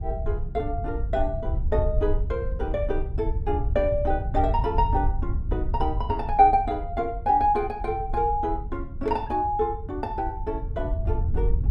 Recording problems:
wind noise; below 78 Hz, SNR 4 dB

